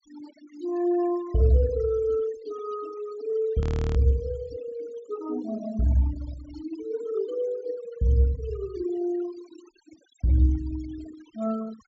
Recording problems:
treble cut off; nothing above 8 kHz
noise reduction artefacts; signal-to-artefact ratio 19 dB
audio freezing; at 3.5 s

